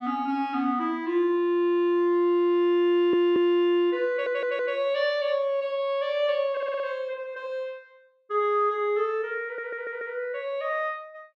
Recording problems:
stutter; 4 times, first at 3 s

